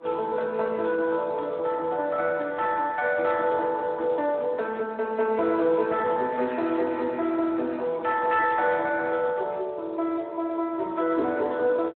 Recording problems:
telephone audio; 260 Hz to 3.8 kHz, Speex

